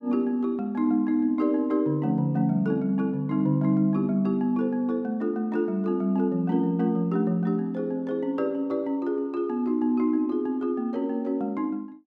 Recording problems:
none

